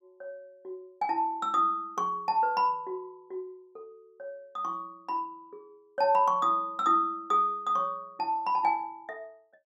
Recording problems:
none

